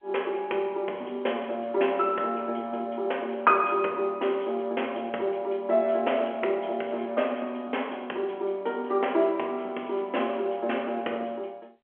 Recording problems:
telephone audio; 280 Hz to 3.3 kHz, G.711

